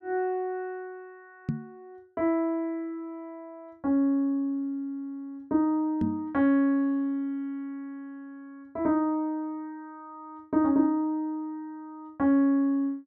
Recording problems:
microphone bump; at 1.5 s and at 6 s; peak +2 dB vs average level

